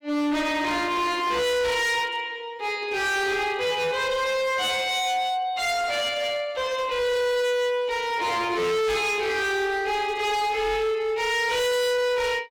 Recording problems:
distortion; hard clipping, signal-to-distortion ratio 6 dB

